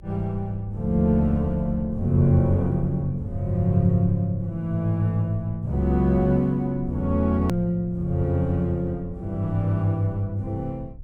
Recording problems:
low-frequency rumble; below 88 Hz, SNR 16 dB
hard cut with a click; at 7.5 s

